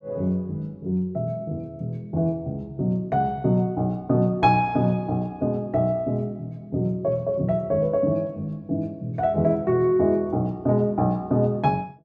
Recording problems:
none

